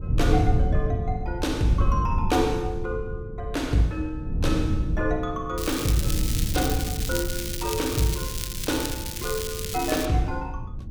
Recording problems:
wind on the microphone; below 120 Hz, SNR 2 dB
crackling; from 5.5 to 10 s; loose cable, SNR 4 dB

